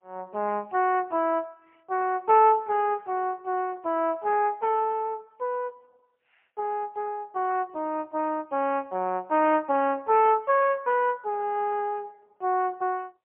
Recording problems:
telephone audio; 280 Hz to 3.1 kHz, AMR-NB, then MP3

